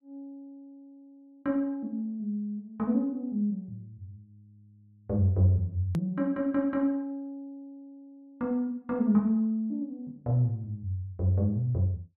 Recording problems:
hard cut with a click; at 6 s

